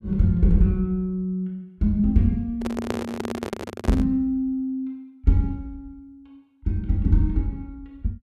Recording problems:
microphone handling noise; from 2.5 to 4 s; peak +1 dB vs average level

